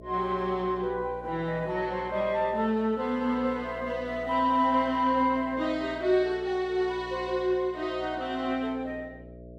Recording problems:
mains hum; 60 Hz, harmonics up to 660 Hz, SNR 19 dB

